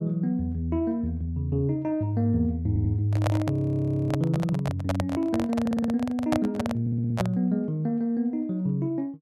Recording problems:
stutter; at 2.5 s, at 5.5 s and at 7 s
handling noise; from 3 to 7.5 s; peak +3 dB vs average level
frozen audio; at 3.5 s for 0.5 s

